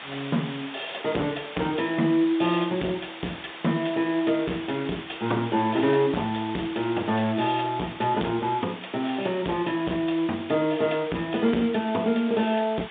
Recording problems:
phone line; 150 Hz to 3.7 kHz, G.711
distorted audio; hard clipping, signal-to-distortion ratio 9 dB
hiss; SNR 13 dB

